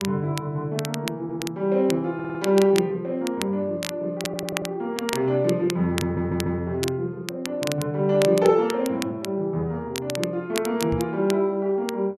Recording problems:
crackling; vinyl, SNR 11 dB
stutter; 4 times, first at 1 s
microphone thump; at 11 s; peak -1 dB vs average level

